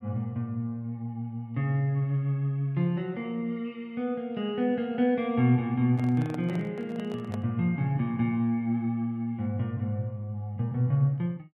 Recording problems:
handling noise; from 6 to 7.5 s; peak -9 dB vs average level

